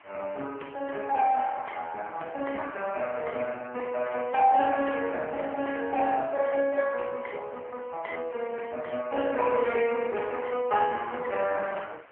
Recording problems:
phone line; 320 Hz to 3.1 kHz, AMR-NB
background hiss; SNR 25 dB

